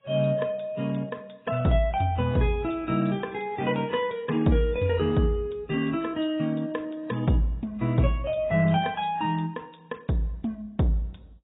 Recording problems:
lossy codec; AAC, log-spectral distance 3 dB, nothing above 3.4 kHz

